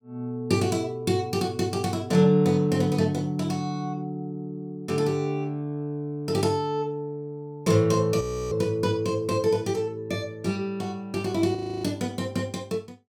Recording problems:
frozen audio; at 8 s and at 12 s

